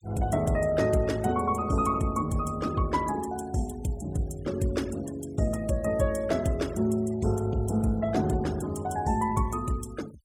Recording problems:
noise reduction artefacts; signal-to-artefact ratio 21 dB

